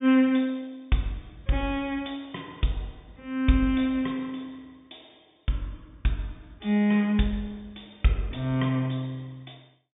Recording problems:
low-pass filter; nothing above 3.7 kHz

